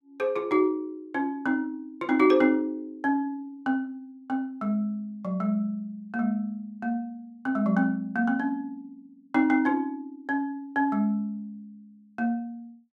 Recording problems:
none

